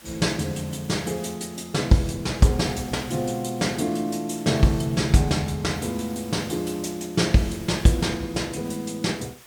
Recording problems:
hiss; slope -1 dB per octave, SNR 21 dB

